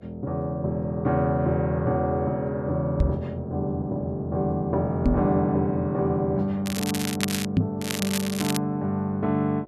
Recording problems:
electrical hum; 60 Hz, harmonics up to 720 Hz, SNR 29 dB
knock on the microphone; at 3 s, at 5 s and at 7.5 s; peak +8 dB vs average level
crackle; at 6.5 s and at 8 s; loose cable, SNR 6 dB

